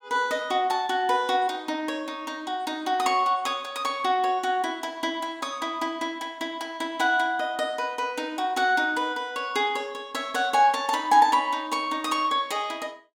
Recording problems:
none

